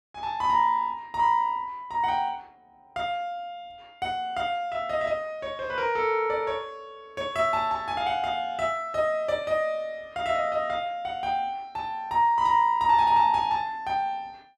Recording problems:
none

